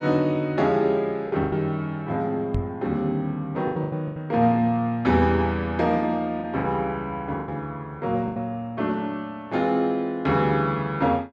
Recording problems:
lost packets; 5% of the sound replaced, filled with the last packet
knock on the microphone; at 2.5 s; peak +1 dB vs average level

